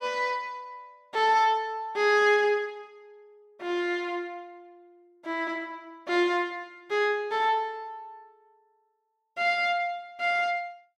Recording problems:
none

